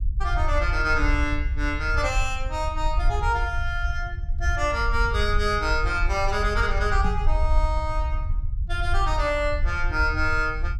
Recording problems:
low-frequency rumble; below 64 Hz, SNR 2 dB
knock on the microphone; at 7 s; peak 0 dB vs average level

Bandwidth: 16.5 kHz